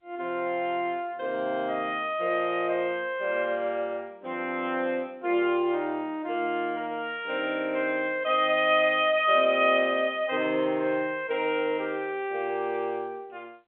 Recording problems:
phone line; 240 Hz to 3.5 kHz, G.711

